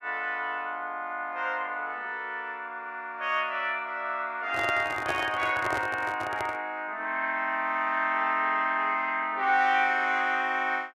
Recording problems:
microphone handling noise; from 4.5 to 6.5 s; peak 0 dB vs average level

